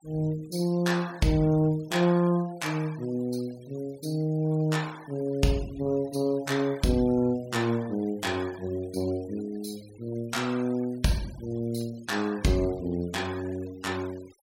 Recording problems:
noise reduction artefacts; signal-to-artefact ratio 21 dB

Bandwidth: 16.5 kHz